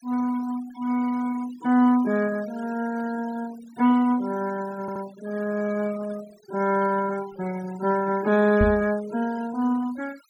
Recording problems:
noise reduction artefacts; signal-to-artefact ratio 19 dB
stutter; at 5 s
knock on the microphone; at 8.5 s; peak +3 dB vs average level

